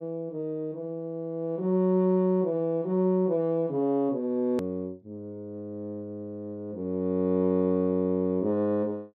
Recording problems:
edit click; at 4.5 s

